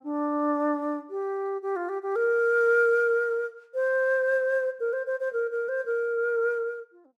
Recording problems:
none

